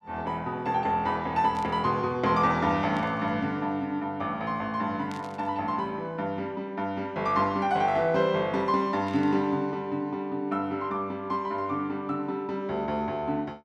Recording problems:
static burst; 4 times, first at 1.5 s; peak -13 dB vs average level

